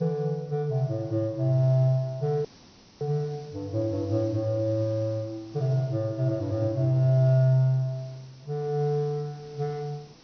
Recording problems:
treble missing; nothing above 6.1 kHz
background hiss; SNR 26 dB
audio cutting out; at 2.5 s for 0.5 s

